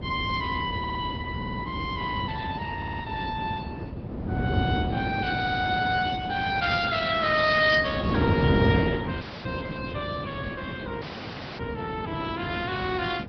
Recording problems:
treble missing; nothing above 5 kHz
lossy codec; Opus, then Opus, log-spectral distance 4 dB
wind noise; below 310 Hz, SNR 3 dB
audio stuttering; 4 times, first at 1 s
audio cutting out; at 9 s and at 11 s for 0.5 s

